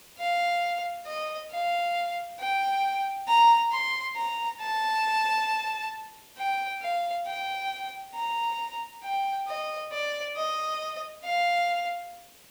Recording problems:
hiss; SNR 23 dB

